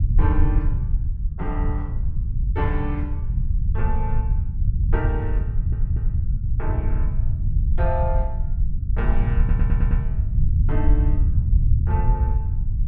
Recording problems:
low-frequency rumble; below 86 Hz, SNR -9 dB
audio stuttering; at 5.5 s and at 9.5 s

